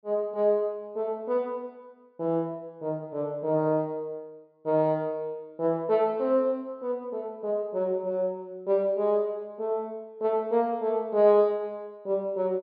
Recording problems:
low-pass filter; nothing above 5 kHz

